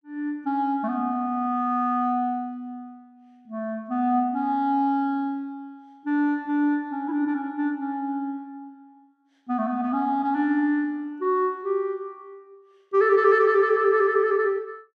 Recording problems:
none

